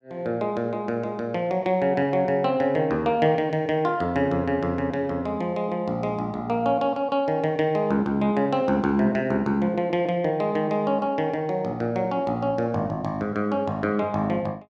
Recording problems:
none

